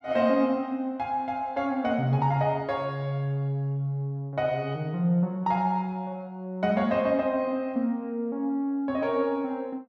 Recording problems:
none

